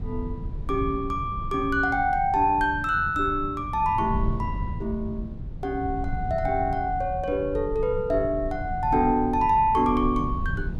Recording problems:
rumble; below 130 Hz, SNR 9 dB

